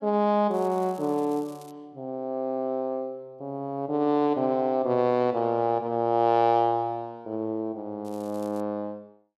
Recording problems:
crackle; from 0.5 to 1.5 s and at 8 s; loose cable, SNR 27 dB

